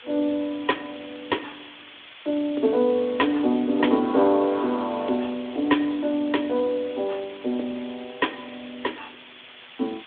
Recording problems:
telephone audio; 220 Hz to 3.6 kHz, Speex
hiss; SNR 18 dB

